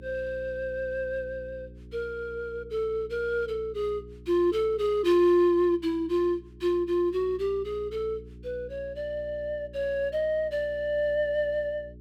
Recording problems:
hum; 60 Hz, harmonics up to 420 Hz, SNR 20 dB

